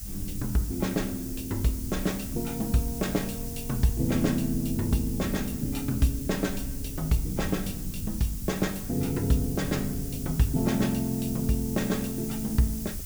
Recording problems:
hiss; slope +4 dB per octave, SNR 10 dB
low-frequency rumble; below 82 Hz, SNR 13 dB

